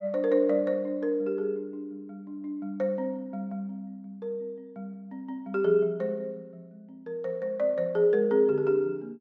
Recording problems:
none

